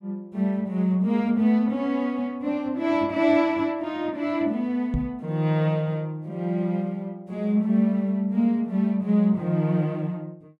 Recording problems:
microphone thump; at 5 s; peak +1 dB vs average level

